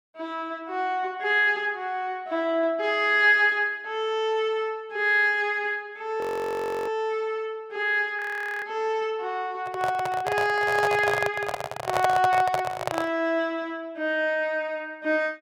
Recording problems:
frozen audio; at 6 s for 0.5 s and at 8 s
microphone handling noise; from 9.5 to 13 s; peak +4 dB vs average level

